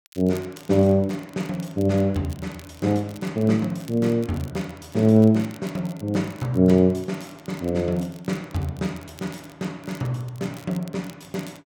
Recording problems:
crackling; vinyl, SNR 25 dB

